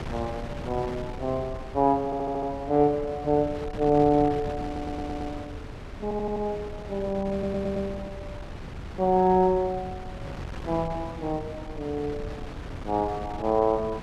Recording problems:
wind on the microphone; below 470 Hz, SNR 12 dB
audio stuttering; 4 times, first at 2 s

